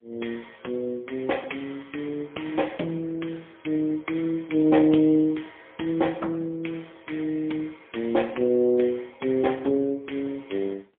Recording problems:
telephone audio; 220 Hz to 3.3 kHz, AMR-NB, then MP3

